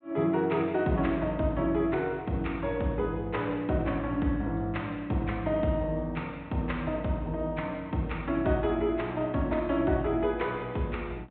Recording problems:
treble cut off; nothing above 4 kHz

